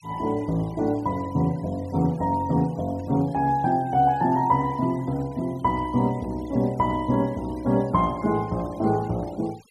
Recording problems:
noise reduction artefacts; signal-to-artefact ratio 26 dB

